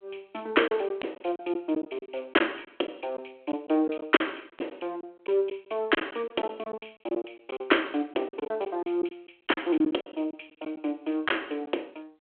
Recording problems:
phone line; 260 Hz to 3.3 kHz, G.726
lost packets; 9% of the sound replaced, filled with silence

